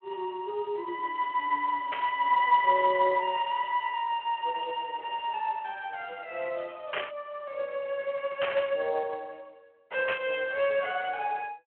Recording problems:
phone line; 340 Hz to 3.7 kHz, Speex
burst of static; 4 times, first at 2 s; peak +1 dB vs average level

